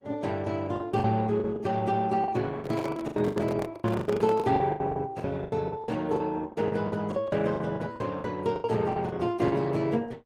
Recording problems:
codec artefacts; AAC, then Opus, log-spectral distance 3 dB
packet loss; 16% of the sound replaced, filled with the last packet
microphone handling noise; from 2.5 to 4.5 s; peak -3 dB vs average level

